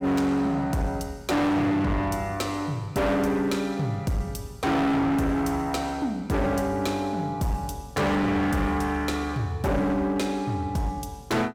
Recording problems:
distorted audio; hard clipping, signal-to-distortion ratio 6 dB

